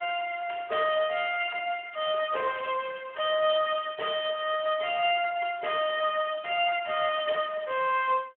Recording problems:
phone line; 340 Hz to 3.4 kHz, Speex

